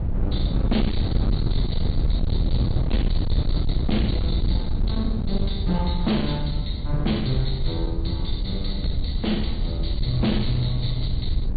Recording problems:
treble missing; nothing above 4.5 kHz
lossy codec; Vorbis, log-spectral distance 3 dB
distorted audio; hard clipping, uneven, signal-to-distortion ratio 7 dB
low-frequency rumble; below 100 Hz, SNR -1 dB

